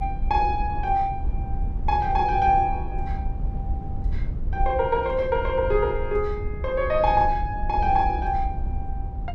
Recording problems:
low-frequency rumble; below 70 Hz, SNR 7 dB

